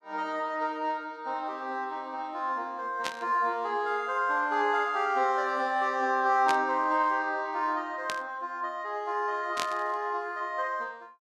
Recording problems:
burst of static; 4 times, first at 3 s; peak 0 dB vs average level

